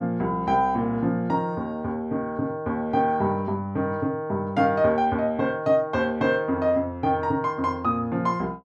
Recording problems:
none

